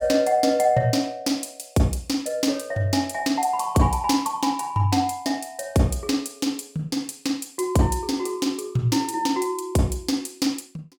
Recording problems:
none

